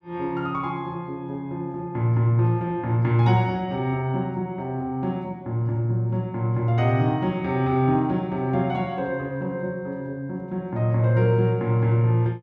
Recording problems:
none

